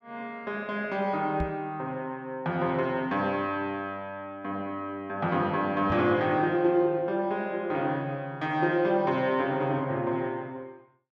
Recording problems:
knock on the microphone; at 1.5 s and at 6 s; peak +1 dB vs average level

